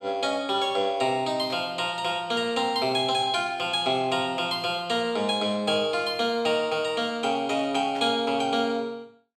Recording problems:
burst of static; at 1.5 s and at 8 s; peak -13 dB vs average level

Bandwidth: 15.5 kHz